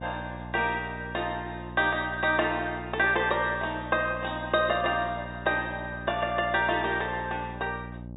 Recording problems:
low-pass filter; nothing above 4 kHz
hum; 60 Hz, harmonics up to 840 Hz, SNR 13 dB

